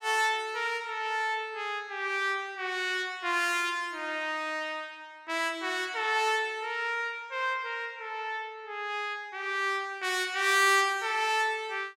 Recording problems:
none

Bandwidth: 17 kHz